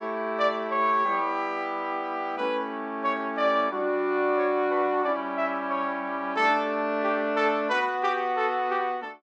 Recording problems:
none

